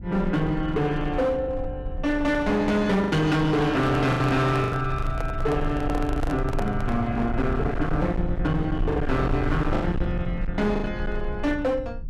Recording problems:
distorted audio; hard clipping, uneven, signal-to-distortion ratio 8 dB
low-frequency rumble; below 92 Hz, SNR 8 dB
lost packets; 5% of the sound replaced, filled with the last packet
microphone handling noise; from 3.5 to 7 s; peak -2 dB vs average level

